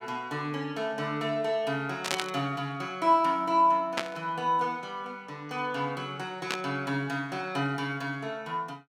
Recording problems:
burst of static; at 2 s, at 4 s and at 6.5 s; peak +4 dB vs average level

